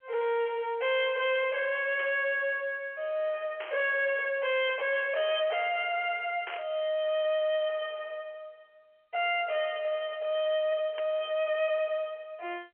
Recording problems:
phone line; 300 Hz to 3.3 kHz, G.711
distorted audio; soft clipping, signal-to-distortion ratio 11 dB
burst of static; 4 times, first at 2 s; peak -7 dB vs average level

